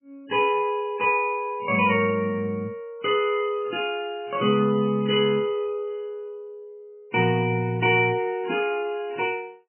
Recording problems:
lossy codec; MP3, log-spectral distance 2 dB, nothing above 2.4 kHz

